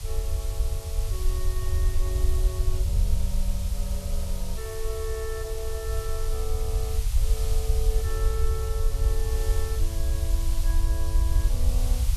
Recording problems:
hiss; SNR 2 dB
rumble; below 64 Hz, SNR -10 dB

